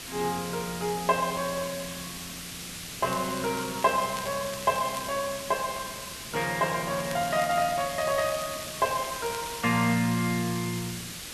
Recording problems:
background hiss; SNR 8 dB
crackle; from 3 to 5 s and from 7 to 9.5 s; loose cable, SNR 16 dB

